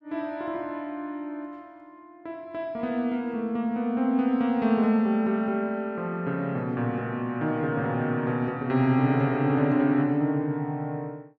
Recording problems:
none

